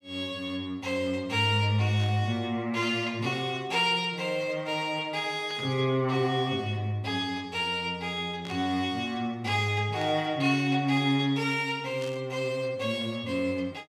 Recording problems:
burst of static; 5 times, first at 2 s; peak -11 dB vs average level

